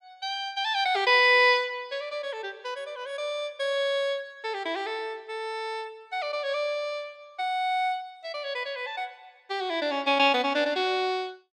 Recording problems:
none

